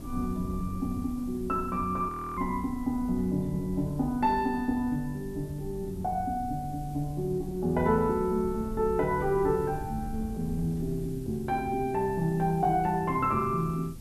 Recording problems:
hiss; slope +1 dB per octave, SNR 26 dB
wind on the microphone; below 130 Hz, SNR 13 dB
frozen audio; at 2 s

